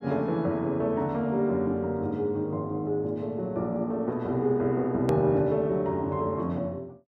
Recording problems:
edit click; at 5 s

